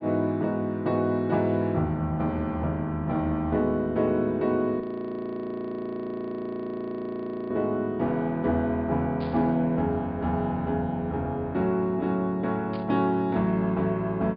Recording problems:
treble missing; nothing above 5 kHz
frozen audio; at 5 s for 2.5 s
static burst; at 9 s and at 13 s; peak -15 dB vs average level

